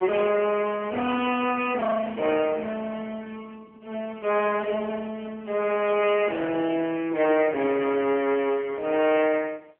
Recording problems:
telephone audio; 280 Hz to 3.5 kHz, AMR-NB
distorted audio; hard clipping, uneven, signal-to-distortion ratio 11 dB

